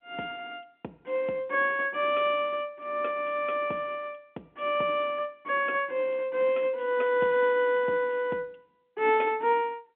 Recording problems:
telephone audio; 220 Hz to 3.4 kHz, G.711

